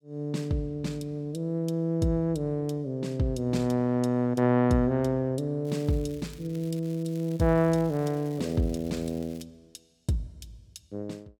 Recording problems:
crackling; from 5.5 to 7 s and from 7 to 9.5 s; loose cable, SNR 25 dB

